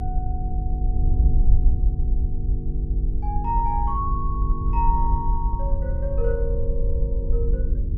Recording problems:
hum; 50 Hz, harmonics up to 450 Hz, SNR 1 dB
wind noise; below 60 Hz, SNR -4 dB

